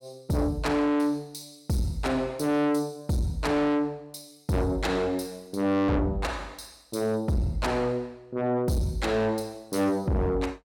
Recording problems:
distortion; soft clipping, signal-to-distortion ratio 7 dB

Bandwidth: 17.5 kHz